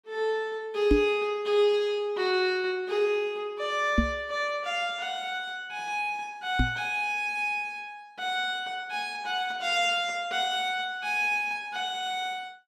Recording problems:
microphone thump; at 1 s, at 4 s and at 6.5 s; peak +8 dB vs average level

